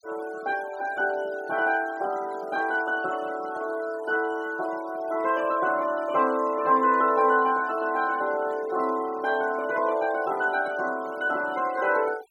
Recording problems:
noise reduction artefacts; signal-to-artefact ratio 20 dB

